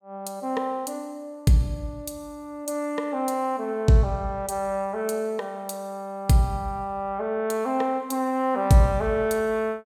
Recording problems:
none

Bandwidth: 17.5 kHz